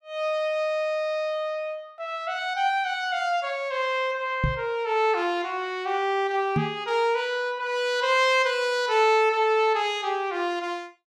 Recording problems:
microphone thump; at 4.5 s and at 6.5 s; peak +3 dB vs average level

